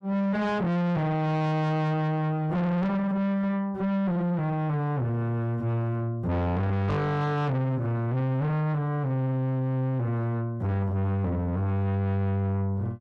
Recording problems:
distorted audio; soft clipping, signal-to-distortion ratio 5 dB

